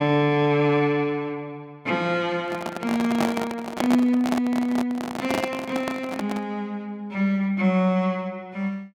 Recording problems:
microphone handling noise; from 2.5 to 6.5 s; peak +3 dB vs average level

